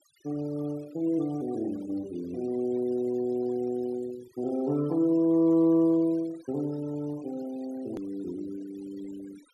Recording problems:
denoising artefacts; signal-to-artefact ratio 22 dB
hard cut with a click; at 8 s

